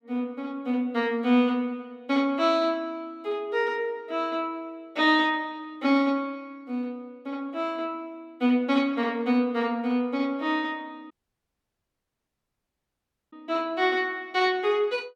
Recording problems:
audio cutting out; at 11 s for 2 s

